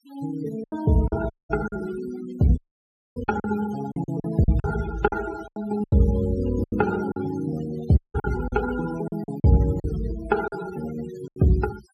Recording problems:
denoising artefacts; signal-to-artefact ratio 16 dB
packet loss; 10% of the sound replaced, filled with silence
dropout; at 1.5 s, at 2.5 s for 0.5 s and at 8 s

